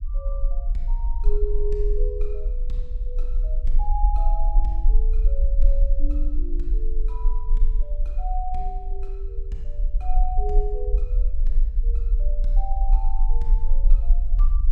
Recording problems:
low-frequency rumble; below 38 Hz, strongest tone 20 Hz, SNR -11 dB

